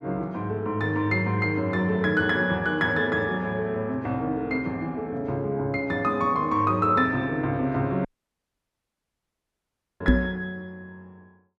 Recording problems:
audio cutting out; at 8 s for 2 s
microphone thump; at 10 s; peak +9 dB vs average level

